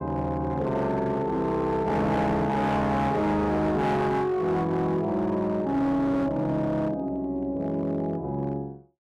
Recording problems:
distortion; hard clipping, signal-to-distortion ratio 10 dB

